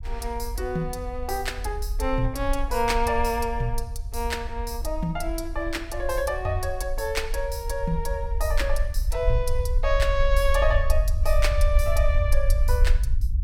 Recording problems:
rumble; below 56 Hz, SNR 1 dB

